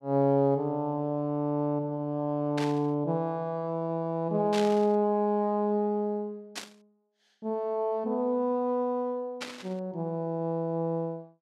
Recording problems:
burst of static; 4 times, first at 2.5 s; peak -3 dB vs average level

